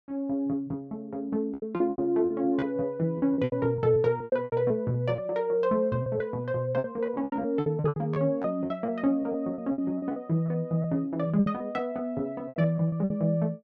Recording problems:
packet loss; 14% of the sound replaced, filled with repeated pitch periods

